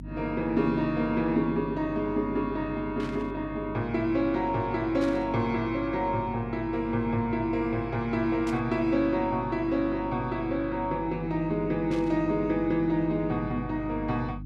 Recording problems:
electrical hum; 50 Hz, harmonics up to 300 Hz, SNR 14 dB
static burst; 4 times, first at 3 s; peak -11 dB vs average level

